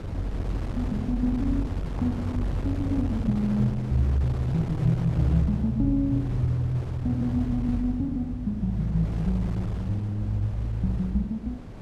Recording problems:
wind on the microphone; below 330 Hz, SNR 9 dB

